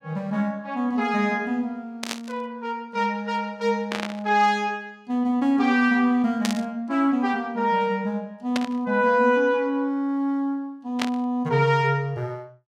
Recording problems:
burst of static; 5 times, first at 2 s; peak +1 dB vs average level

